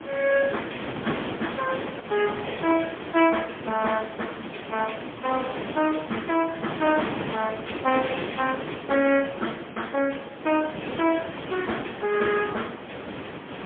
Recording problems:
phone line; 220 Hz to 3.3 kHz, AMR-NB, then MP3
wind noise; below 1.5 kHz, SNR 8 dB

